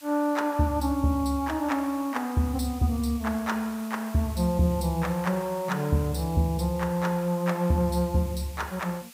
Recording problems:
hiss; slope +2 dB per octave, SNR 19 dB

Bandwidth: 15.5 kHz